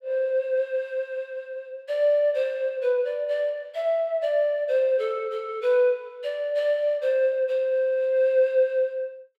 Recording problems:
none

